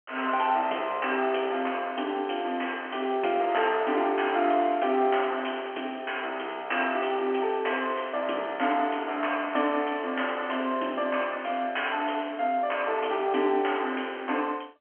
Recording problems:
phone line; 220 Hz to 3.2 kHz, G.711

